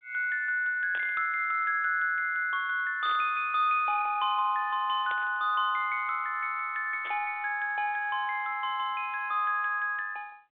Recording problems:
telephone audio; 220 Hz to 3.7 kHz, G.726
burst of static; 4 times, first at 1 s; peak -10 dB vs average level

